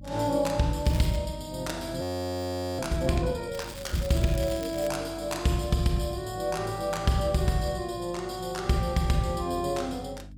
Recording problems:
hum; 50 Hz, harmonics up to 450 Hz, SNR 17 dB
crackling; at 1 s and from 3.5 to 5 s; loose cable, SNR 16 dB
frozen audio; at 2 s for 1 s

